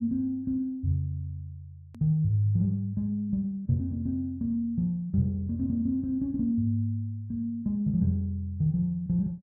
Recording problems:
hard cut with a click; at 2 s

